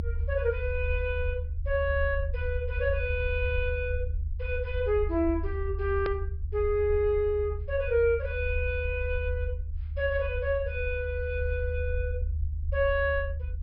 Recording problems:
low-pass filter; nothing above 5.5 kHz
rumble; below 76 Hz, strongest tone 76 Hz, SNR 4 dB
edit click; at 6 s

